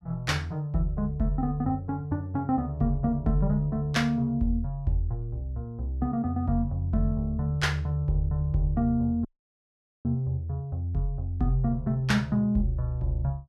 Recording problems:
dropout; at 9.5 s for 1 s

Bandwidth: 13 kHz